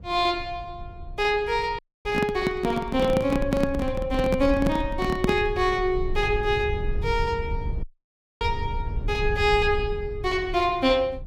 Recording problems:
low-frequency rumble; below 84 Hz, SNR 9 dB
dropout; at 2 s and at 8 s for 0.5 s
handling noise; from 2 to 5.5 s; peak +5 dB vs average level

